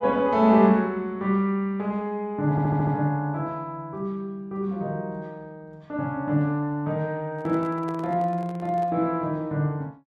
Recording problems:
audio stuttering; at 2.5 s
handling noise; from 7.5 to 9 s; peak -12 dB vs average level

